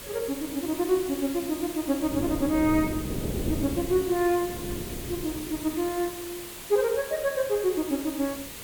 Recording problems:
background hiss; slope -1 dB per octave, SNR 11 dB
wind noise; below 350 Hz, SNR 8 dB

